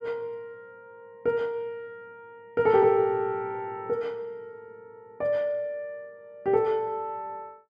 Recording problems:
none

